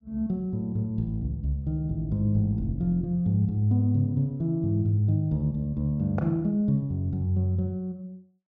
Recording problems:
none

